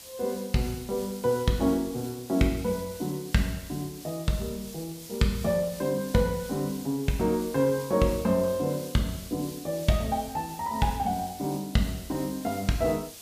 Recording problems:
background hiss; SNR 15 dB

